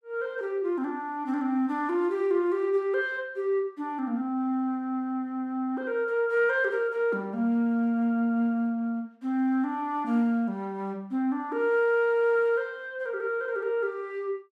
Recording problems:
none

